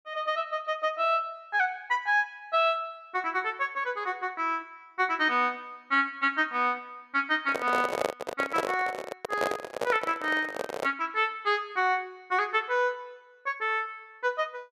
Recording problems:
microphone handling noise; from 7.5 to 11 s; peak +4 dB vs average level

